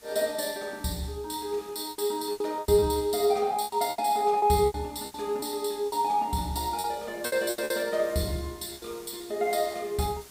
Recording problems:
background hiss; slope -1 dB per octave, SNR 22 dB
packet loss; 10% of the sound replaced, filled with repeated pitch periods

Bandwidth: 15.5 kHz